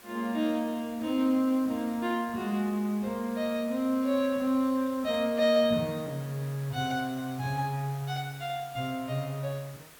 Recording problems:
hiss; slope -2 dB per octave, SNR 20 dB

